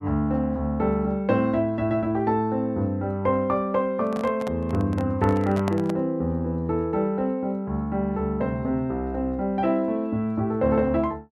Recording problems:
microphone handling noise; from 4 to 6 s; peak -2 dB vs average level

